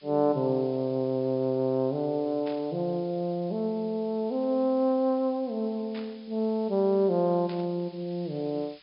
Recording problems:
treble missing; nothing above 5.5 kHz
background hiss; SNR 27 dB
static burst; at 2.5 s, at 6 s and at 7.5 s; peak -13 dB vs average level

